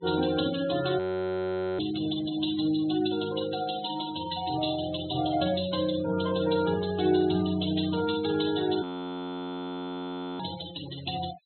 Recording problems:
low-pass filter; nothing above 4 kHz
noise reduction artefacts; signal-to-artefact ratio 12 dB
frozen audio; at 1 s for 1 s and at 9 s for 1.5 s

